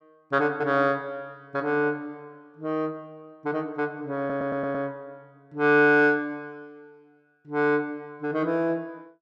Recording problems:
stutter; at 4 s

